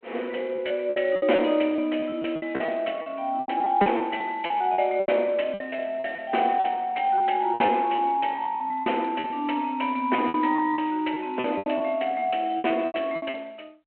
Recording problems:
phone line; 280 Hz to 3.2 kHz, G.726
lost packets; 14% of the sound replaced, filled with repeated pitch periods

